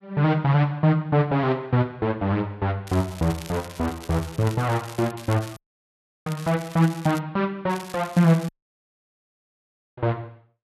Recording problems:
crackle; from 3 to 5 s, from 5 to 7 s and at 7.5 s; loose cable, SNR 18 dB
audio cutting out; at 5.5 s for 0.5 s and at 8.5 s for 1.5 s

